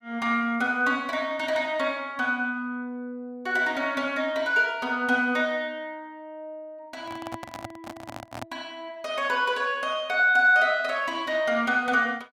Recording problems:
microphone handling noise; from 7 to 8.5 s; peak -7 dB vs average level

